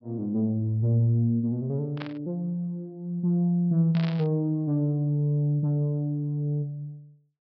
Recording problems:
treble missing; nothing above 5.5 kHz
burst of static; at 2 s and at 4 s; peak -8 dB vs average level

